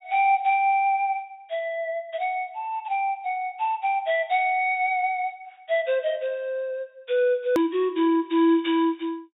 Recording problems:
treble cut off; nothing above 4 kHz
click at an edit; at 7.5 s

